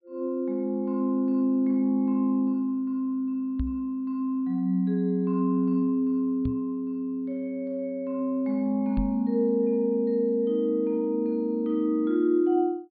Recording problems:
treble cut off; nothing above 4.6 kHz
knock on the microphone; at 3.5 s, at 6.5 s and at 9 s; peak -1 dB vs average level

